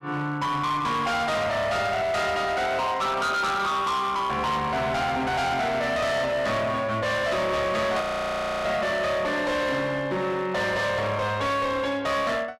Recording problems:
distortion; hard clipping, signal-to-distortion ratio 7 dB
audio freezing; at 8 s for 0.5 s

